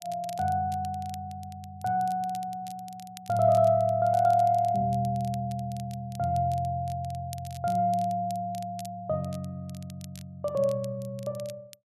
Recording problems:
crackling; vinyl, SNR 23 dB

